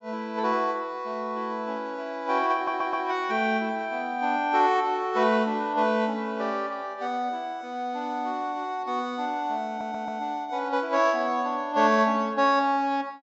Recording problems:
low-pass filter; nothing above 8 kHz
stutter; at 2.5 s and at 9.5 s

